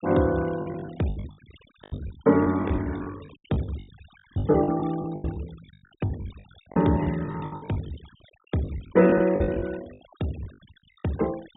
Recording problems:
treble missing; nothing above 4 kHz
denoising artefacts; signal-to-artefact ratio 21 dB
lost packets; 20% of the sound replaced, filled with the last packet

